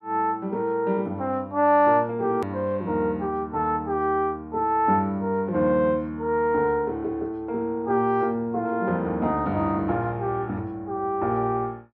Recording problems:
edit click; at 2.5 s

